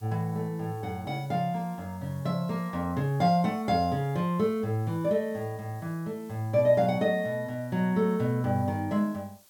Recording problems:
hiss; SNR 28 dB

